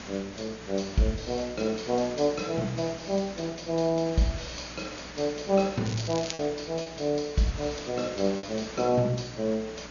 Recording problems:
treble cut off; nothing above 6.9 kHz
electrical hum; 60 Hz, harmonics up to 600 Hz, SNR 21 dB
hiss; slope -2 dB per octave, SNR 14 dB
lost packets; 1.7% of the sound replaced, filled with repeated pitch periods
crackling; at 6 s; loose cable, SNR 10 dB

